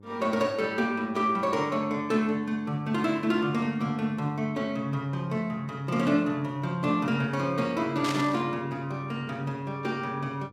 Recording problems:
hum; 50 Hz, harmonics up to 1 kHz, SNR 24 dB
burst of static; at 8 s; peak -1 dB vs average level

